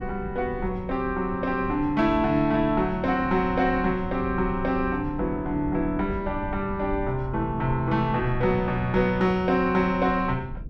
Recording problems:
rumble; below 140 Hz, SNR 12 dB

